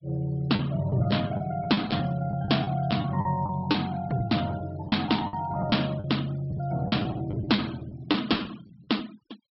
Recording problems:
treble missing; nothing above 5.5 kHz
denoising artefacts; signal-to-artefact ratio 21 dB
lost packets; 11% of the sound replaced, filled with the last packet

